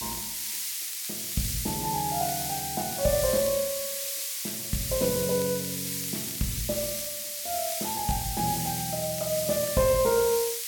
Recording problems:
background hiss; SNR 1 dB
crackle; vinyl, SNR 21 dB

